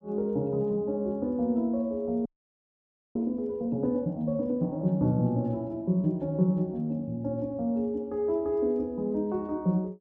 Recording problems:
audio freezing; at 2.5 s for 1 s

